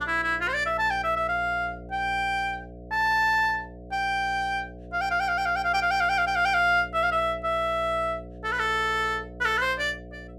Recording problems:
hum; 60 Hz, harmonics up to 720 Hz, SNR 17 dB

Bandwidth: 15 kHz